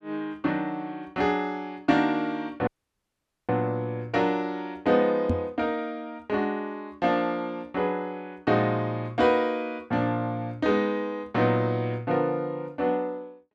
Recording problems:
dropout; at 2.5 s for 1 s
microphone thump; at 5.5 s; peak +5 dB vs average level

